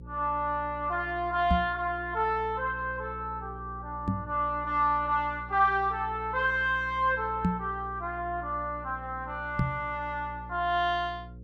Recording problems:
mains hum; 60 Hz, harmonics up to 540 Hz, SNR 15 dB
knock on the microphone; 4 times, first at 1.5 s; peak +6 dB vs average level

